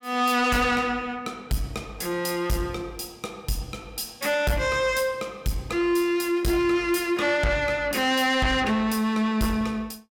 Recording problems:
distorted audio; soft clipping, signal-to-distortion ratio 11 dB

